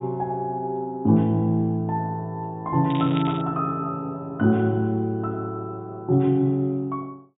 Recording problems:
treble missing; nothing above 4 kHz
crackling; at 3 s; loose cable, SNR 15 dB

